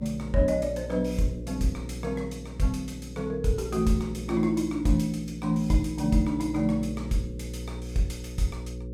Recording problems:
electrical hum; 60 Hz, harmonics up to 540 Hz, SNR 10 dB

